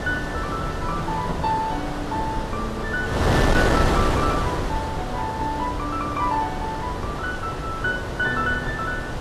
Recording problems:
codec artefacts; AAC, log-spectral distance 3 dB
wind on the microphone; below 870 Hz, SNR -1 dB

